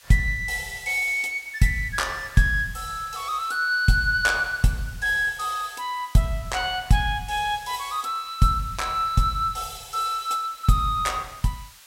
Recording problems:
hiss; SNR 22 dB

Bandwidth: 16 kHz